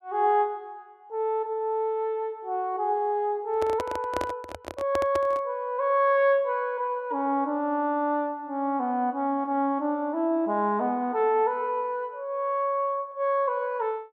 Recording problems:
microphone handling noise; from 3.5 to 5.5 s; peak -1 dB vs average level

